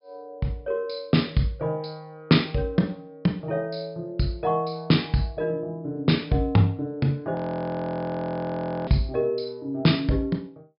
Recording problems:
treble cut off; nothing above 5.5 kHz
audio freezing; at 7.5 s for 1.5 s

